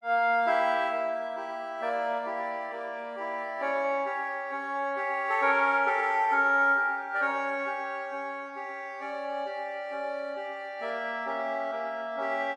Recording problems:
none

